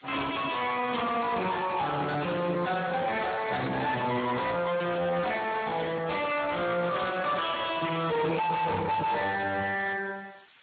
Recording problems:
codec artefacts; AAC, then Speex, log-spectral distance 12 dB, nothing above 3.7 kHz
distortion; hard clipping, uneven, signal-to-distortion ratio 5 dB
background hiss; SNR 27 dB

